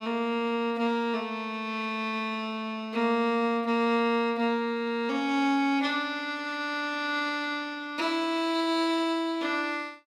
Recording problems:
none

